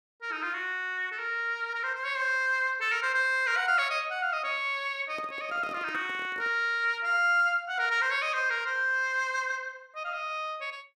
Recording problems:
handling noise; from 5 to 6.5 s; peak -12 dB vs average level

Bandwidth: 14.5 kHz